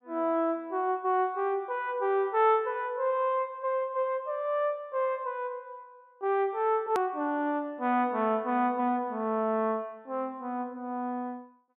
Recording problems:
treble missing; nothing above 4 kHz
edit click; at 7 s

